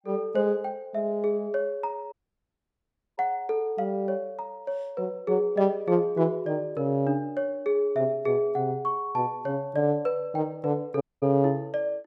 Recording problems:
dropout; at 2 s for 1 s and at 11 s

